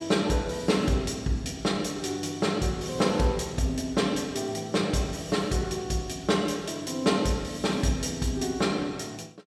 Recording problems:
none

